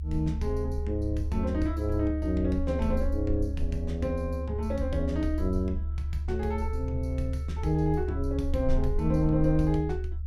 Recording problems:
low-frequency rumble; below 74 Hz, strongest tone 72 Hz, SNR 3 dB

